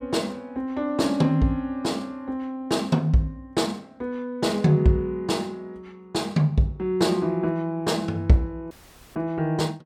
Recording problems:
audio cutting out; at 8.5 s

